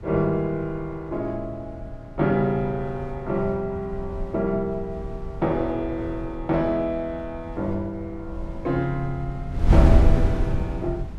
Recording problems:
wind on the microphone; below 100 Hz, SNR 0 dB

